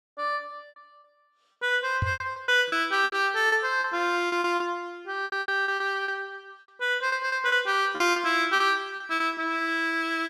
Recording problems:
packet loss; 12% of the sound replaced, filled with repeated pitch periods
microphone thump; at 2 s; peak +1 dB vs average level

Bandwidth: 14 kHz